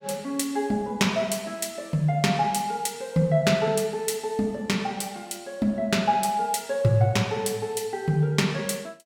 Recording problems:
none

